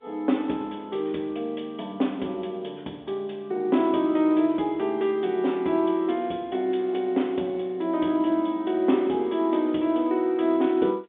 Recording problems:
phone line; 190 Hz to 3.6 kHz, G.711

